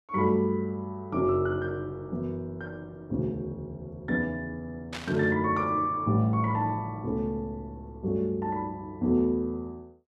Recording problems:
static burst; at 5 s; peak -4 dB vs average level

